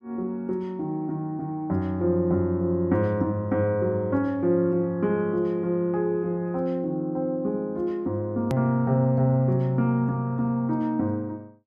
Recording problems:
edit click; at 8.5 s

